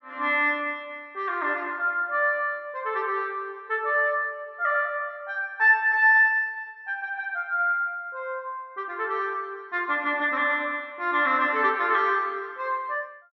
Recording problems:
none

